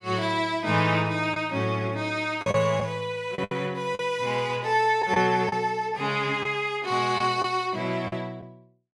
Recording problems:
lost packets; 5% of the sound replaced, filled with the last packet

